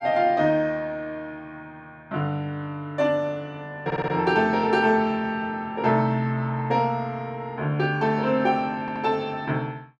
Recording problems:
stutter; at 4 s and at 9 s

